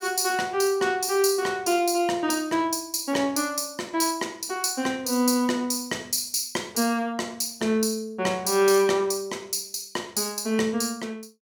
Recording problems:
none

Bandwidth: 18 kHz